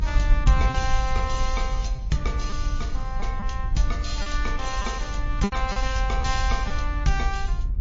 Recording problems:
lossy codec; MP3, log-spectral distance 3 dB, nothing above 7.1 kHz
rumble; below 54 Hz, SNR -1 dB
packet loss; 4% of the sound replaced, filled with repeated pitch periods

